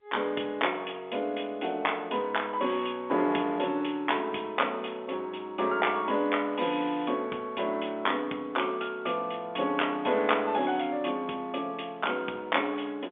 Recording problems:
phone line; 240 Hz to 3.6 kHz, G.711

